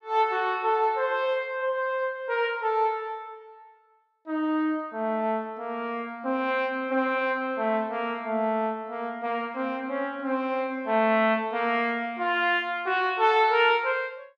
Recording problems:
none

